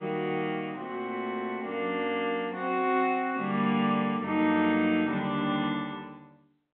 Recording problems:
telephone audio; 170 Hz to 3.7 kHz, G.711

